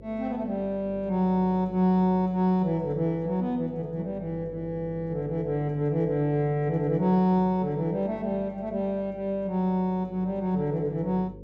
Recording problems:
hum; 50 Hz, harmonics up to 550 Hz, SNR 20 dB

